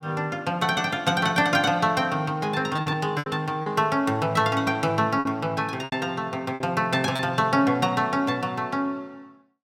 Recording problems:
lost packets; 5% of the sound replaced, filled with repeated pitch periods

